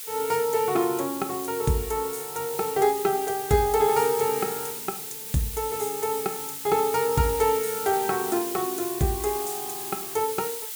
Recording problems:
hiss; SNR 7 dB

